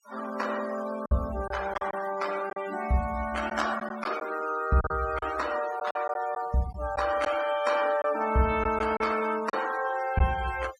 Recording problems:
noise reduction artefacts; signal-to-artefact ratio 13 dB
packet loss; 5% of the sound replaced, filled with silence

